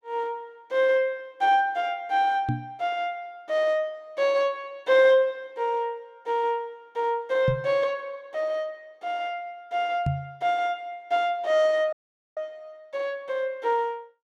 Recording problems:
microphone thump; at 2.5 s, at 7.5 s and at 10 s; peak +3 dB vs average level
dropout; at 12 s

